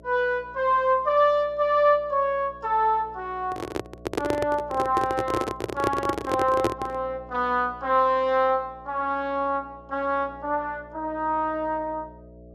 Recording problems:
hum; 60 Hz, harmonics up to 660 Hz, SNR 23 dB
microphone handling noise; from 3.5 to 7 s; peak +4 dB vs average level

